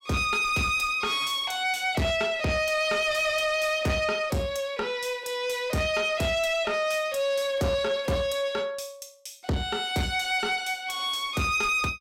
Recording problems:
distortion; soft clipping, signal-to-distortion ratio 11 dB

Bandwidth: 16.5 kHz